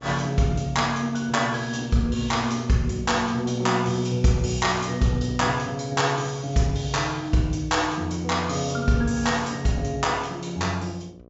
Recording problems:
treble missing; nothing above 8 kHz
electrical hum; 60 Hz, harmonics up to 1.2 kHz, SNR 26 dB

